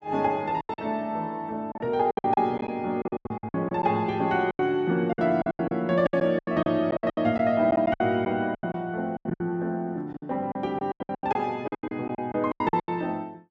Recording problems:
packet loss; 18% of the sound replaced, filled with silence

